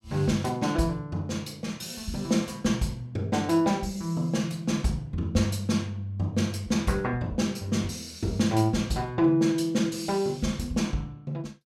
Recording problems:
none

